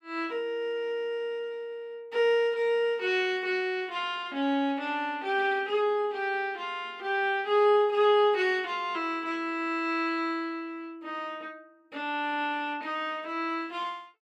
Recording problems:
none

